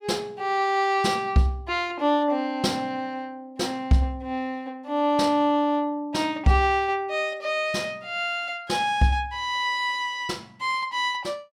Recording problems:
none

